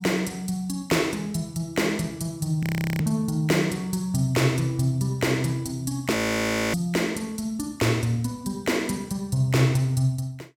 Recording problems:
frozen audio; at 2.5 s and at 6 s for 0.5 s

